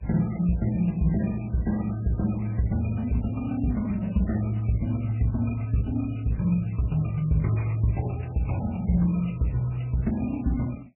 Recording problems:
codec artefacts; MP3, then MP3, log-spectral distance 4 dB, nothing above 2.7 kHz

